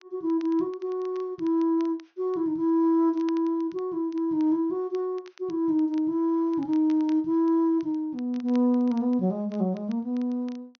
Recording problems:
treble cut off; nothing above 6.4 kHz
crackle; vinyl, SNR 30 dB

